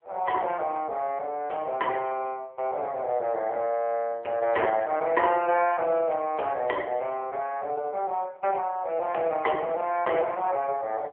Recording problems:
telephone audio; 300 Hz to 3.3 kHz, AMR-NB

